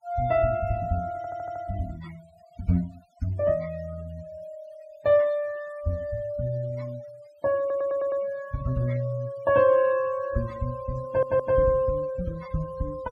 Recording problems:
noise reduction artefacts; signal-to-artefact ratio 23 dB
audio stuttering; at 1 s, at 7.5 s and at 11 s

